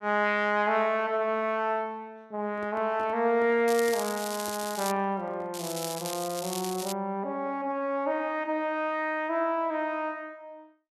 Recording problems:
microphone handling noise; from 2.5 to 5.5 s; peak -13 dB vs average level
crackle; from 3.5 to 5 s and from 5.5 to 7 s; loose cable, SNR 8 dB

